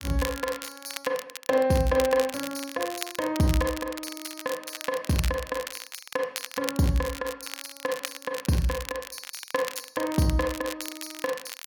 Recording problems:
crackle; vinyl, SNR 9 dB

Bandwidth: 17.5 kHz